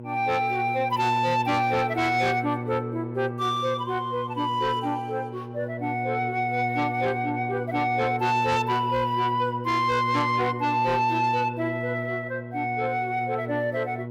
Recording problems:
distorted audio; soft clipping, signal-to-distortion ratio 12 dB
electrical hum; 60 Hz, harmonics up to 960 Hz, SNR 9 dB

